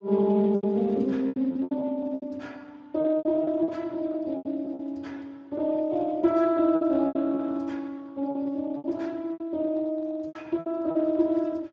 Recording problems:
lossy compression; Speex, log-spectral distance 2 dB
packet loss; 12% of the sound replaced, filled with repeated pitch periods

